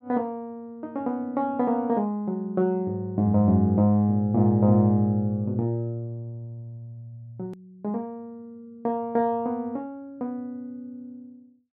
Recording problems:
edit click; at 7.5 s

